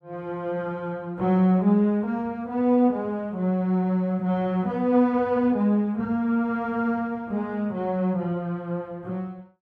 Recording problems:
none

